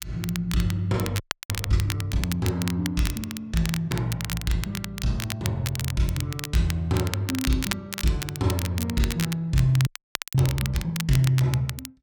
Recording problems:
crackle; vinyl, SNR 8 dB
audio freezing; at 1 s and at 10 s

